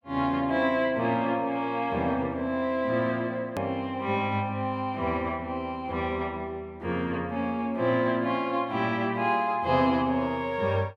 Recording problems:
hard cut with a click; at 3.5 s

